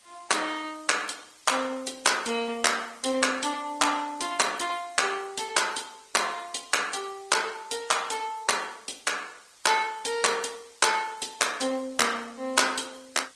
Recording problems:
codec artefacts; MP3, then Opus, log-spectral distance 11 dB
background hiss; slope +2 dB per octave, SNR 27 dB

